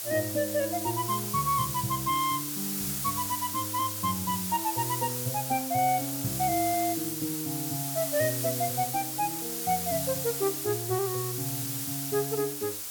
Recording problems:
hiss; slope +1 dB per octave, SNR 1 dB

